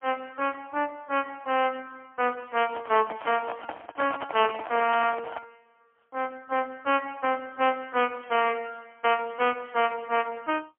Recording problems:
phone line; 280 Hz to 3.2 kHz, AMR-NB, then MP3
microphone handling noise; from 2.5 to 5.5 s; peak -2 dB vs average level

